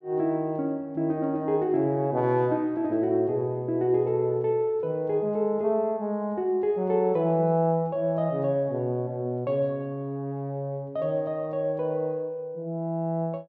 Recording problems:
none

